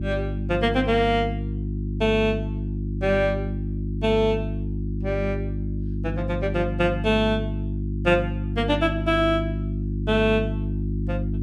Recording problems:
electrical hum; 50 Hz, harmonics up to 350 Hz, SNR 4 dB

